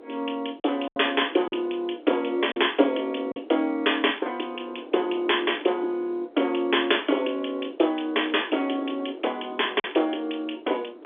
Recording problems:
telephone audio; 280 Hz to 3.5 kHz, G.711
wind on the microphone; below 510 Hz, SNR 17 dB
packet loss; 3% of the sound replaced, filled with silence

